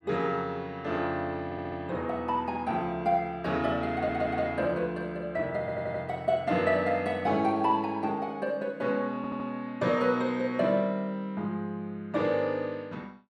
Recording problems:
stutter; 4 times, first at 1.5 s

